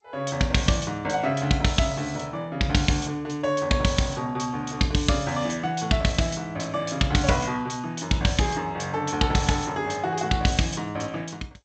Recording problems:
lossy codec; G.722, log-spectral distance 4 dB, nothing above 7.3 kHz

